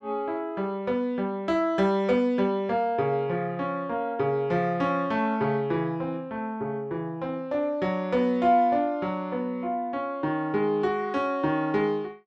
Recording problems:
none

